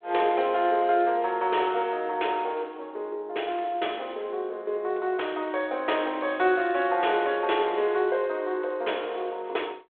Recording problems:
telephone audio; 320 Hz to 3.5 kHz, G.726

